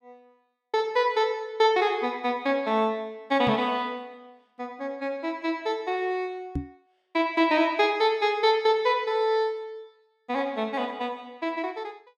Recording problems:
microphone thump; at 3.5 s and at 6.5 s; peak 0 dB vs average level

